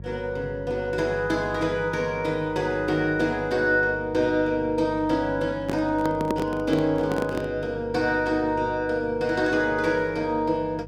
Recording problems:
hum; 50 Hz, harmonics up to 550 Hz, SNR 16 dB
microphone handling noise; from 5.5 to 7.5 s; peak +1 dB vs average level

